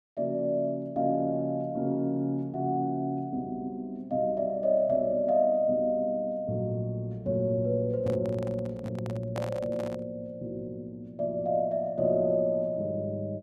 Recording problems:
handling noise; from 8 to 10 s; peak -4 dB vs average level

